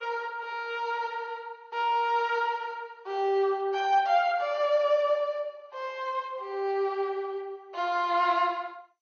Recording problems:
codec artefacts; Vorbis, then MP2, log-spectral distance 2 dB, nothing above 6.5 kHz

